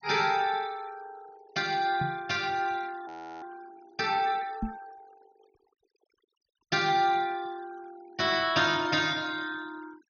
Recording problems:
treble missing; nothing above 6.5 kHz
denoising artefacts; signal-to-artefact ratio 22 dB
microphone thump; at 2 s and at 4.5 s; peak 0 dB vs average level
audio freezing; at 3 s

